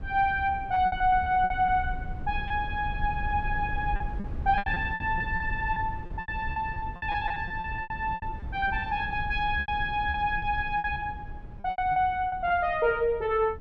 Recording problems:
rumble; below 96 Hz, SNR 10 dB
lost packets; 14% of the sound replaced, filled with repeated pitch periods

